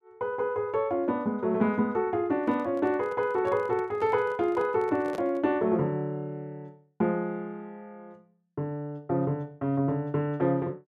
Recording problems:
microphone handling noise; from 2.5 to 5.5 s; peak -6 dB vs average level

